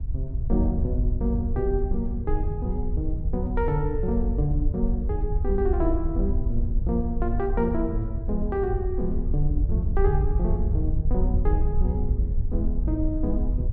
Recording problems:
wind on the microphone; below 68 Hz, SNR -1 dB

